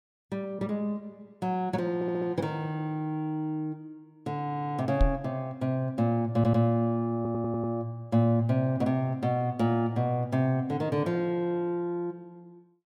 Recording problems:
audio stuttering; 4 times, first at 2 s
microphone bump; at 5 s; peak +6 dB vs average level

